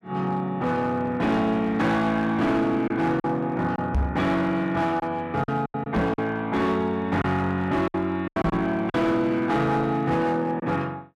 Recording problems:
distortion; hard clipping, uneven, signal-to-distortion ratio 11 dB
packet loss; 5% of the sound replaced, filled with silence
microphone bump; at 4 s, at 6 s and at 8.5 s; peak +4 dB vs average level

